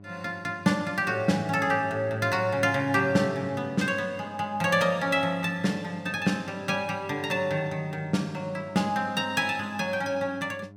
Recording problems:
electrical hum; 50 Hz, harmonics up to 1.1 kHz, SNR 21 dB

